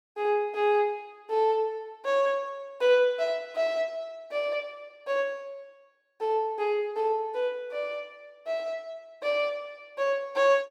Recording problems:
none

